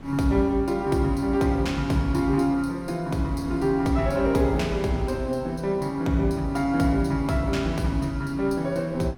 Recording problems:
wind noise; below 340 Hz, SNR 21 dB

